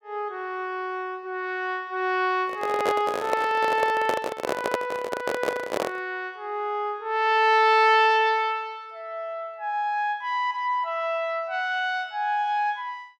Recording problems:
microphone handling noise; from 2.5 to 6 s; peak +4 dB vs average level

